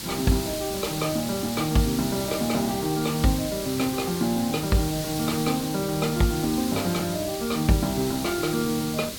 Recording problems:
background hiss; SNR 7 dB

